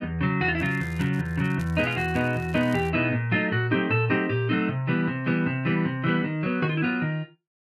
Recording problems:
crackling; from 0.5 to 3 s; loose cable, SNR 26 dB

